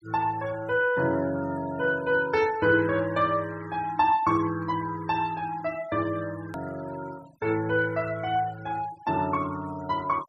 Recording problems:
denoising artefacts; signal-to-artefact ratio 20 dB
click at an edit; at 6.5 s

